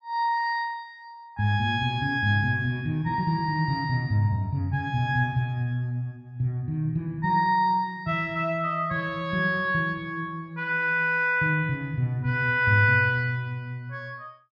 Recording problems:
none

